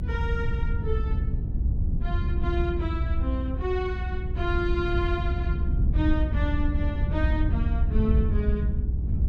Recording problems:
rumble; below 88 Hz, SNR -5 dB
wind on the microphone; below 280 Hz, SNR 16 dB

